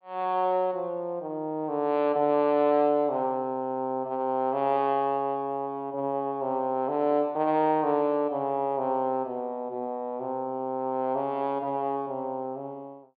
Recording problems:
low-pass filter; nothing above 4.7 kHz

